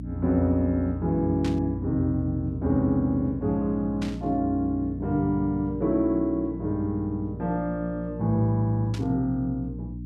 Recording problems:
hum; 60 Hz, harmonics up to 300 Hz, SNR 10 dB
burst of static; at 1.5 s, at 4 s and at 9 s; peak -8 dB vs average level

